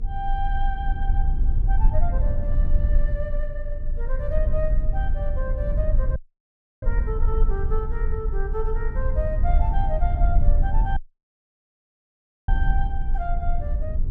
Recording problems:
hum; 50 Hz, harmonics up to 450 Hz, SNR 19 dB
rumble; below 50 Hz, strongest tone 24 Hz, SNR -8 dB
dropout; at 6 s for 0.5 s and at 11 s for 1.5 s

